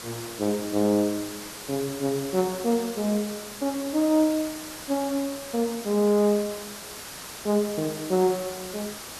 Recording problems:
hiss; slope -1 dB per octave, SNR 11 dB

